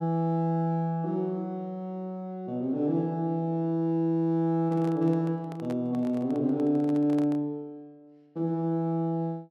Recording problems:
microphone handling noise; from 4.5 to 7.5 s; peak -10 dB vs average level

